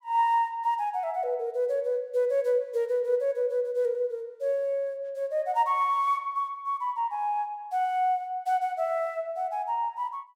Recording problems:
none

